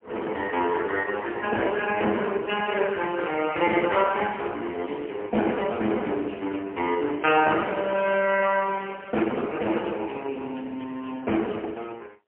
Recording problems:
telephone audio; 240 Hz to 3.1 kHz, AMR-NB, then MP3

